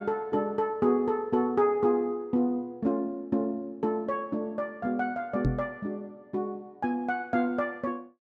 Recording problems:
microphone bump; at 5.5 s; peak +5 dB vs average level

